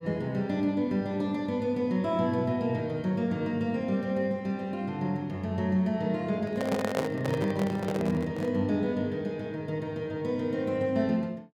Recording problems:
handling noise; from 6.5 to 8.5 s; peak +2 dB vs average level

